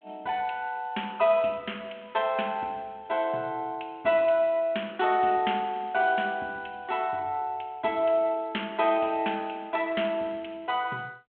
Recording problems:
telephone audio; 240 Hz to 3.4 kHz, G.726

